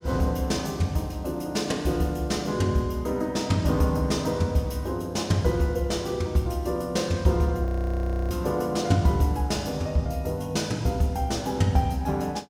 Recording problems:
frozen audio; at 7.5 s for 0.5 s

